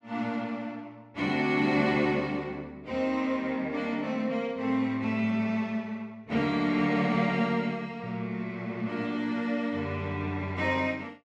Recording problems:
none

